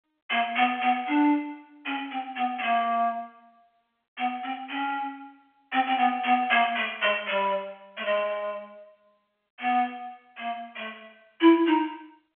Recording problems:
telephone audio; 300 Hz to 3.4 kHz, G.711

